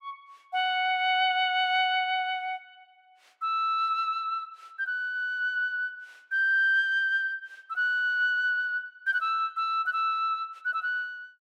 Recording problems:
none

